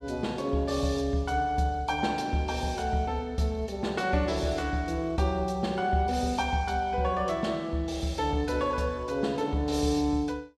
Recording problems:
none

